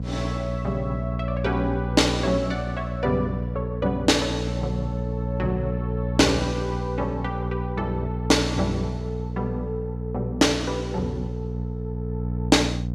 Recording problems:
electrical hum; 60 Hz, harmonics up to 540 Hz, SNR 4 dB

